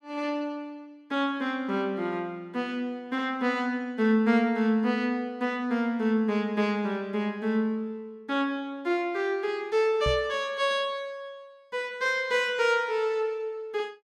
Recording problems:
microphone bump; at 10 s; peak 0 dB vs average level

